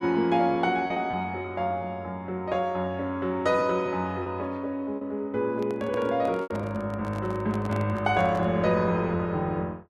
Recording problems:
packet loss; 4% of the sound replaced, filled with repeated pitch periods
handling noise; from 5.5 to 8.5 s; peak -6 dB vs average level

